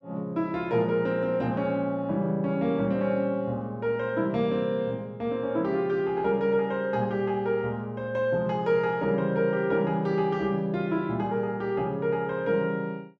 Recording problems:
none

